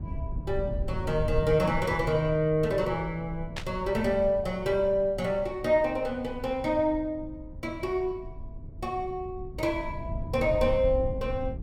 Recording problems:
rumble; below 110 Hz, SNR 10 dB
static burst; at 3.5 s; peak -3 dB vs average level

